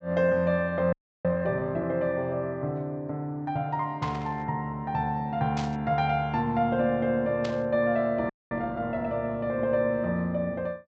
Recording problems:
treble cut off; nothing above 8 kHz
audio freezing; at 1 s and at 8.5 s
static burst; at 4 s, at 5.5 s and at 7.5 s; peak -6 dB vs average level

